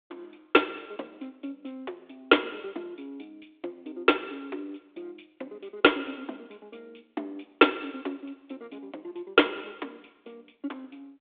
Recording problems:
telephone audio; 260 Hz to 3.6 kHz, G.726

